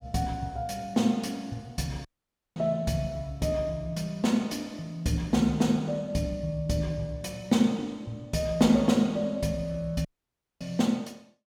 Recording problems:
dropout; at 2 s for 0.5 s and at 10 s for 0.5 s

